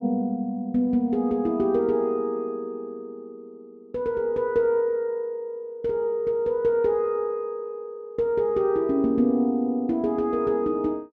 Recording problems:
none

